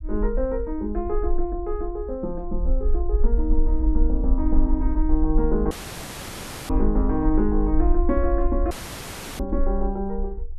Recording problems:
rumble; below 46 Hz, strongest tone 22 Hz, SNR 0 dB
audio cutting out; at 5.5 s for 1 s and at 8.5 s for 0.5 s

